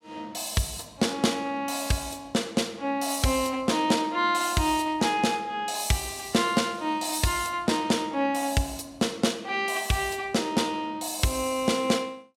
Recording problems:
none

